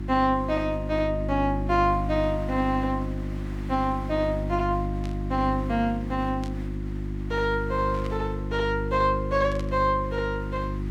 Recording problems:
hum; 50 Hz, harmonics up to 350 Hz, SNR 5 dB
hiss; SNR 21 dB
static burst; 4 times, first at 5 s; peak -11 dB vs average level

